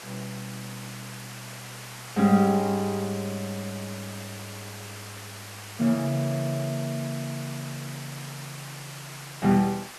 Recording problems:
hiss; slope -1 dB per octave, SNR 13 dB

